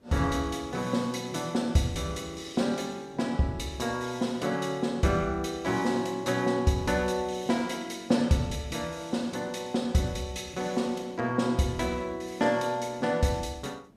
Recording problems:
hiss; slope -8 dB per octave, SNR 28 dB

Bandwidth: 14.5 kHz